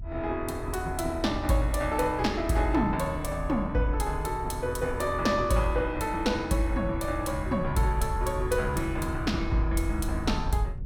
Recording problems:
rumble; below 78 Hz, SNR 9 dB

